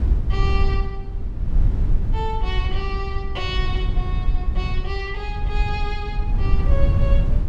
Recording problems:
rumble; below 76 Hz, SNR -7 dB

